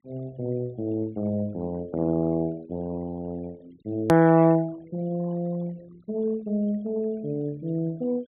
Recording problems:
low-pass filter; nothing above 4 kHz
denoising artefacts; signal-to-artefact ratio 25 dB
edit click; at 4 s

